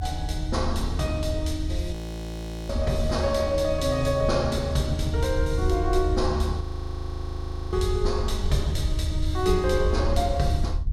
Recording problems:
low-frequency rumble; below 78 Hz, SNR 3 dB
frozen audio; at 2 s for 1 s and at 6.5 s for 1 s

